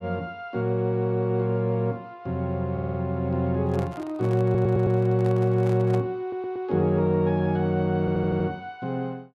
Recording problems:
audio stuttering; 4 times, first at 2.5 s
handling noise; from 3.5 to 6 s; peak -8 dB vs average level

